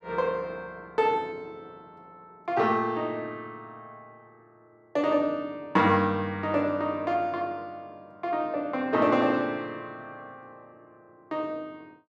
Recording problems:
none

